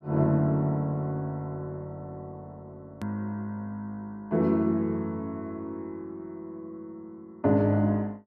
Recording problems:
click at an edit; at 3 s

